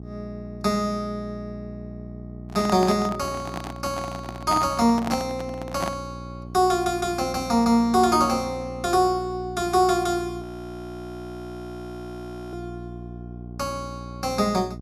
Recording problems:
hum; 60 Hz, harmonics up to 780 Hz, SNR 14 dB
handling noise; from 2.5 to 6 s; peak -1 dB vs average level
audio freezing; at 10 s for 2 s

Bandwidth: 15.5 kHz